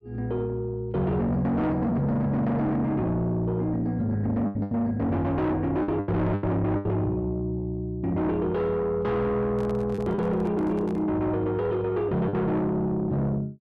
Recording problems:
distorted audio; soft clipping, signal-to-distortion ratio 7 dB
lost packets; 4% of the sound replaced, filled with the last packet
handling noise; from 9.5 to 11 s; peak -9 dB vs average level

